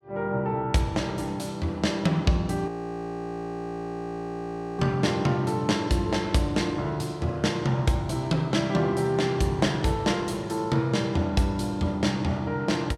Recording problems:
audio freezing; at 2.5 s for 2 s

